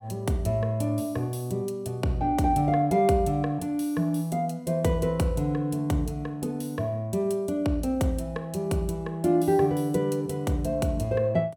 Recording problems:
none

